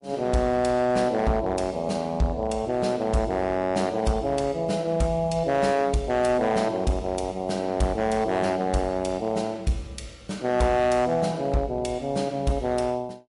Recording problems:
lossy compression; MP3, log-spectral distance 2 dB, nothing above 11 kHz
distortion; hard clipping, signal-to-distortion ratio 10 dB

